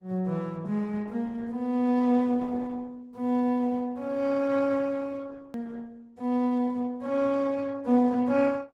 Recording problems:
codec artefacts; Opus, log-spectral distance 2 dB
hard cut with a click; at 5.5 s

